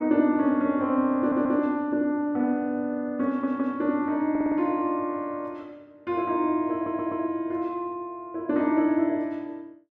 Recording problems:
stutter; 4 times, first at 1 s

